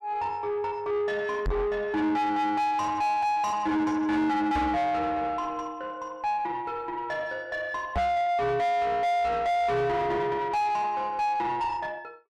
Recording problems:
distorted audio; soft clipping, signal-to-distortion ratio 5 dB
microphone thump; at 1.5 s, at 4.5 s and at 8 s; peak +6 dB vs average level

